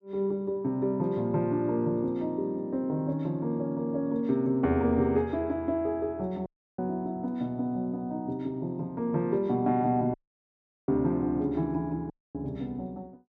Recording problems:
audio cutting out; at 6.5 s, at 10 s for 0.5 s and at 12 s

